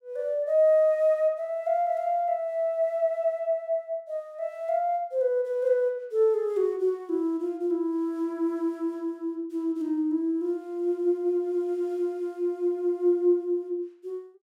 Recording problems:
none

